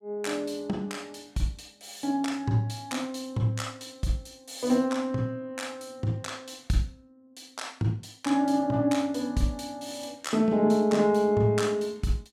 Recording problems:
none

